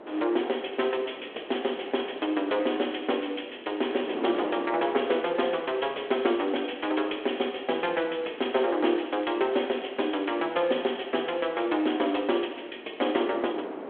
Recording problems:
phone line; 280 Hz to 3.4 kHz, G.726
wind noise; below 700 Hz, SNR 14 dB
crackling; from 2 to 4 s, from 5.5 to 7.5 s and from 8 to 11 s; loose cable, SNR 26 dB

